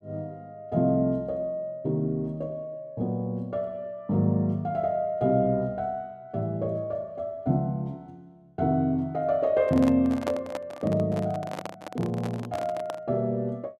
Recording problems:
microphone handling noise; from 9.5 to 13 s; peak -1 dB vs average level

